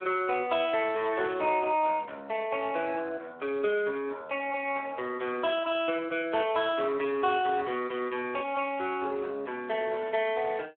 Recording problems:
telephone audio; 300 Hz to 3.6 kHz, Speex

